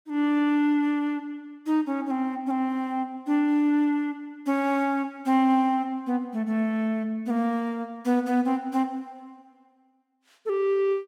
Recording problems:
none

